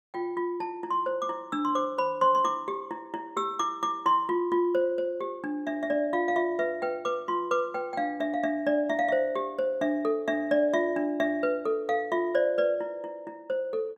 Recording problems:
none

